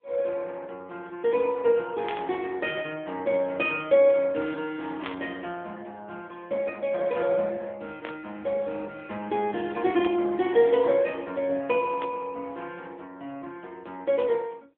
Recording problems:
telephone audio; 170 Hz to 3.7 kHz, AMR-NB
burst of static; 5 times, first at 2 s; peak -6 dB vs average level

